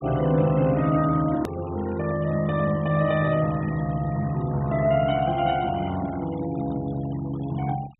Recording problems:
low-pass filter; nothing above 4 kHz
noise reduction artefacts; signal-to-artefact ratio 21 dB
hard cut with a click; at 1.5 s

